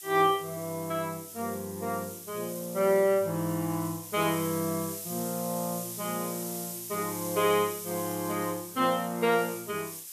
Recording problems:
hiss; slope +6 dB per octave, SNR 9 dB

